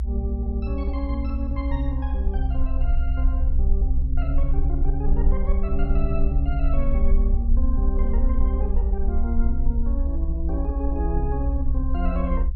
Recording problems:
rumble; below 64 Hz, SNR -6 dB

